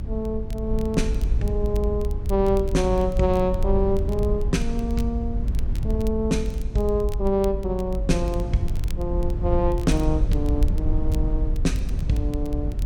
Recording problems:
rumble; below 74 Hz, SNR 1 dB
crackle; vinyl, SNR 23 dB

